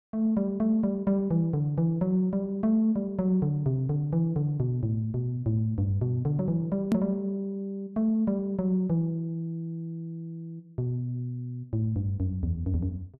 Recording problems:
edit click; at 7 s

